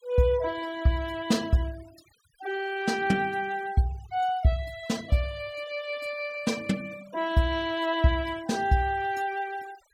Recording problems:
denoising artefacts; signal-to-artefact ratio 20 dB

